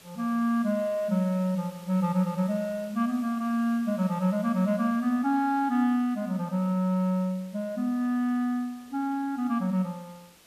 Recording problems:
hiss; slope -1 dB per octave, SNR 25 dB

